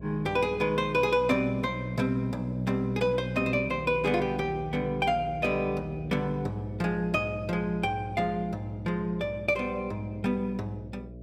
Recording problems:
hum; 60 Hz, harmonics up to 660 Hz, SNR 15 dB

